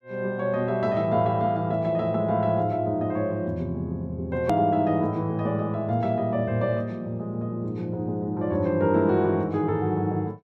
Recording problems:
click at an edit; at 4.5 s

